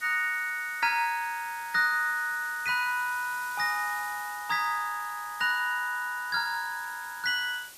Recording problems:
hiss; slope +1 dB per octave, SNR 17 dB

